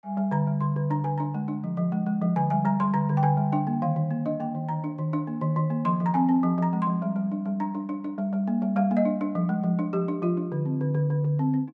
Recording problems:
none

